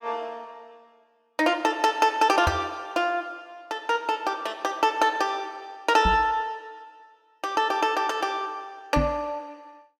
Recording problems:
microphone bump; at 2.5 s, at 6 s and at 9 s; peak +3 dB vs average level

